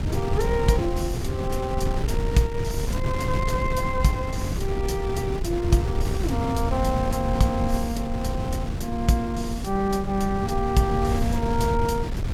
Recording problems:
wind on the microphone; below 150 Hz, SNR 2 dB

